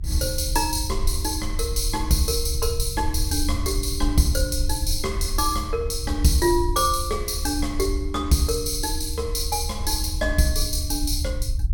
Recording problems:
rumble; below 72 Hz, SNR 5 dB

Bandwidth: 17.5 kHz